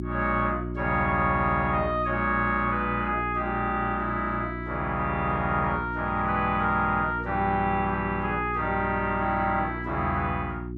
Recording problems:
electrical hum; 60 Hz, harmonics up to 360 Hz, SNR 8 dB

